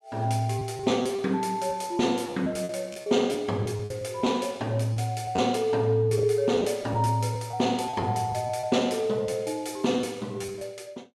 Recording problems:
lost packets; 8% of the sound replaced, filled with repeated pitch periods

